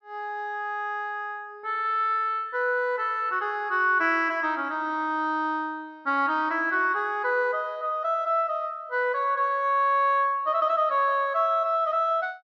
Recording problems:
none

